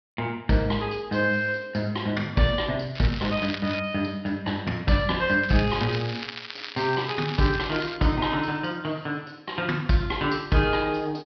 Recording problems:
treble cut off; nothing above 5.5 kHz
crackle; at 3 s and from 5.5 to 8 s; loose cable, SNR 10 dB

